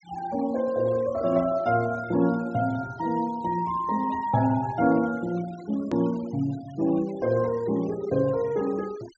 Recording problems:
low-pass filter; nothing above 8 kHz
noise reduction artefacts; signal-to-artefact ratio 22 dB
edit click; at 6 s

